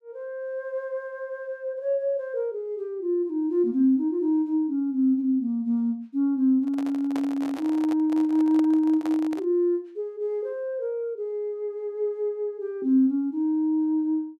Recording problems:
handling noise; from 6.5 to 9.5 s; peak -7 dB vs average level

